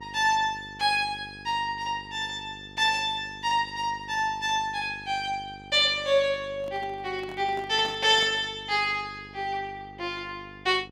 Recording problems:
electrical hum; 50 Hz, harmonics up to 1.4 kHz, SNR 21 dB
microphone handling noise; from 6.5 to 8.5 s; peak -11 dB vs average level

